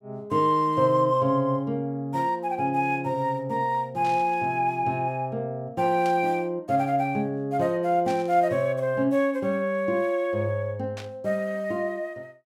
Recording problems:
static burst; 4 times, first at 4 s; peak -11 dB vs average level

